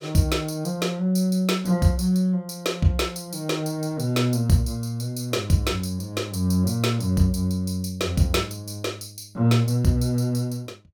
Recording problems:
none

